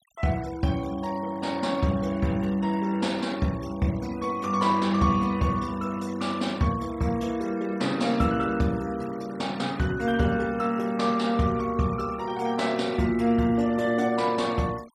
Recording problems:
noise reduction artefacts; signal-to-artefact ratio 22 dB

